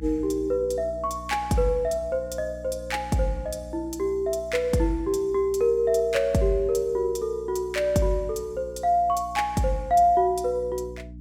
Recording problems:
electrical hum; 60 Hz, harmonics up to 300 Hz, SNR 18 dB

